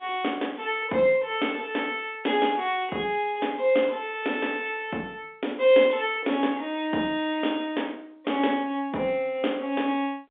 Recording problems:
telephone audio; 190 Hz to 3.6 kHz, G.711

